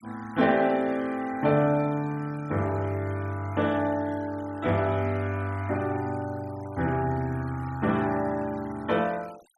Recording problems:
noise reduction artefacts; signal-to-artefact ratio 23 dB

